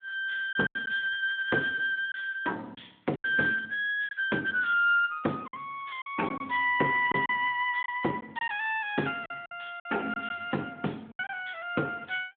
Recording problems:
telephone audio; 260 Hz to 3.3 kHz, Speex
lost packets; 6% of the sound replaced, filled with silence

